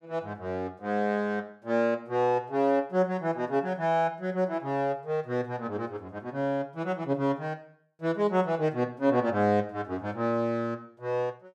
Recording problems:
none

